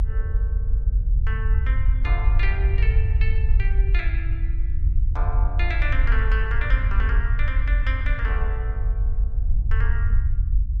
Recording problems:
low-frequency rumble; below 62 Hz, SNR -9 dB

